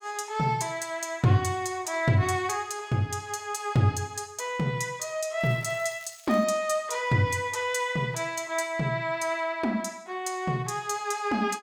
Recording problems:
crackling; from 5.5 to 6.5 s; loose cable, SNR 23 dB

